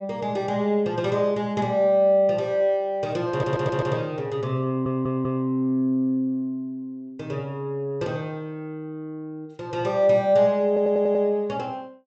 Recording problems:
treble cut off; nothing above 8 kHz
audio stuttering; at 3.5 s, at 4.5 s and at 11 s

